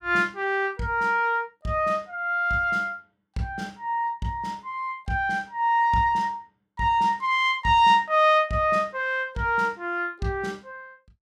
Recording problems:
none

